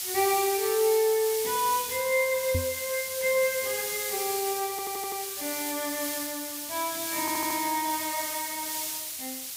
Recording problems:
background hiss; slope +4 dB per octave, SNR 3 dB
knock on the microphone; at 2.5 s; peak +3 dB vs average level
audio stuttering; at 4.5 s and at 7 s

